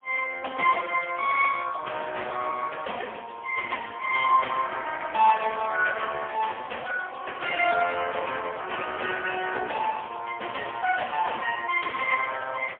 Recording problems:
phone line; 390 Hz to 3.1 kHz, AMR-NB, then MP3

